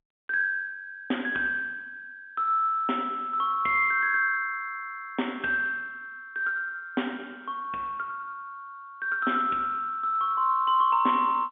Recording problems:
phone line; 190 Hz to 3.5 kHz, G.711

